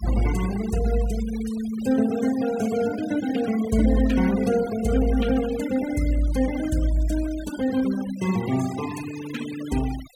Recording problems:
noise reduction artefacts; signal-to-artefact ratio 15 dB

